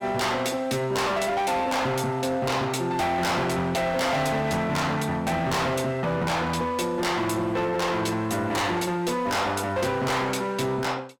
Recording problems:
distorted audio; hard clipping, signal-to-distortion ratio 7 dB

